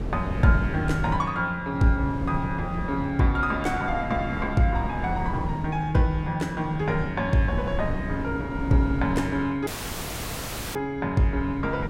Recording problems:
wind noise; below 230 Hz, SNR 8 dB
audio cutting out; at 9.5 s for 1 s

